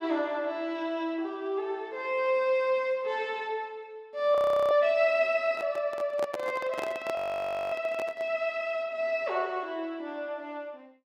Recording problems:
audio freezing; at 4.5 s and at 7 s for 0.5 s
handling noise; from 5.5 to 8.5 s; peak -3 dB vs average level

